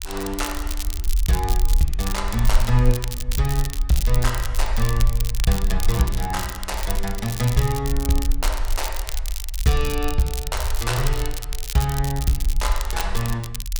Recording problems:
rumble; below 46 Hz, SNR 3 dB
crackle; vinyl, SNR 8 dB

